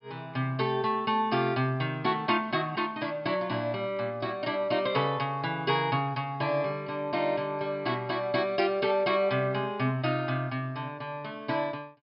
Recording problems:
low-pass filter; nothing above 5.5 kHz

